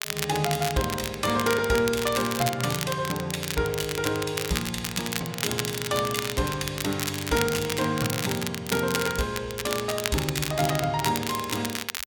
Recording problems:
crackling; vinyl, SNR 5 dB

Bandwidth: 17 kHz